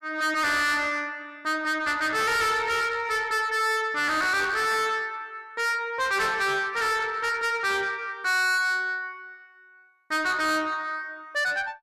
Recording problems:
distorted audio; soft clipping, signal-to-distortion ratio 6 dB

